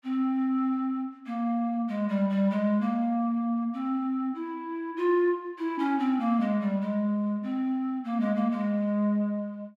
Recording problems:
none

